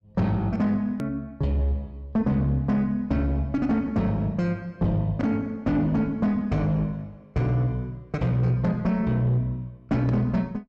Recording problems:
distortion; soft clipping, signal-to-distortion ratio 12 dB
edit click; at 1 s

